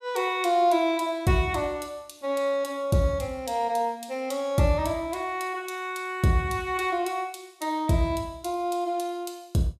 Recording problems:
none

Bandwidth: 15 kHz